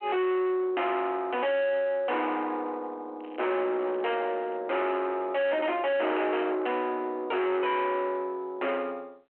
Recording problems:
phone line; 280 Hz to 3.1 kHz, G.726
distortion; soft clipping, signal-to-distortion ratio 6 dB
crackle; from 3 to 4.5 s; loose cable, SNR 28 dB

